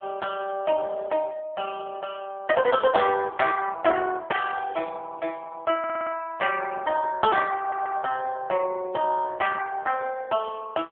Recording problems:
phone line; 340 Hz to 3.1 kHz, AMR-NB
audio stuttering; at 6 s and at 7.5 s

